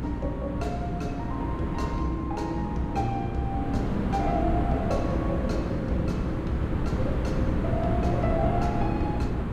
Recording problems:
electrical hum; 60 Hz, harmonics up to 300 Hz, SNR 4 dB
wind on the microphone; below 330 Hz, SNR 0 dB

